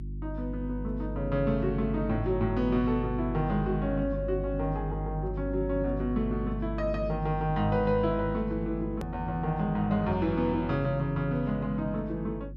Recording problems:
hum; 50 Hz, harmonics up to 350 Hz, SNR 7 dB
edit click; at 9 s

